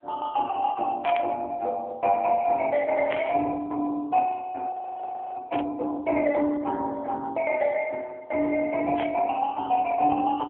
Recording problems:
phone line; 320 Hz to 2.8 kHz, AMR-NB
burst of static; 4 times, first at 1 s; peak -3 dB vs average level
frozen audio; at 4.5 s for 0.5 s

